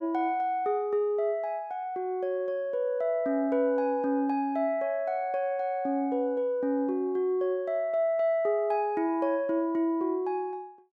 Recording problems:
none

